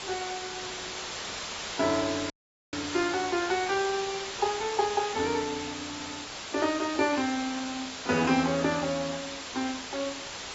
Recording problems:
lossy codec; AAC, log-spectral distance 17 dB, nothing above 7.1 kHz
hiss; slope -1 dB per octave, SNR 6 dB
dropout; at 2.5 s

